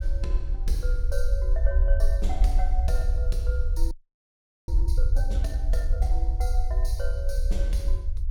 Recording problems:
low-frequency rumble; below 56 Hz, SNR -10 dB
audio freezing; at 4 s for 1 s

